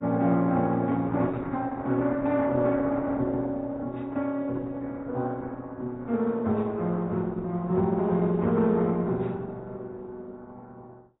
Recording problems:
lossy compression; Opus, then AAC, log-spectral distance 3 dB

